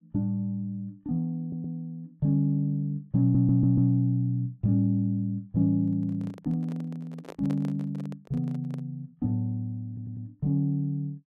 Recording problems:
stutter; at 1.5 s, at 3 s and at 10 s
handling noise; from 6 to 9 s; peak -9 dB vs average level

